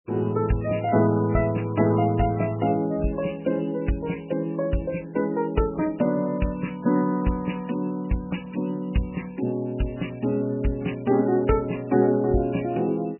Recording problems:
lossy codec; MP3, log-spectral distance 4 dB, nothing above 2.9 kHz

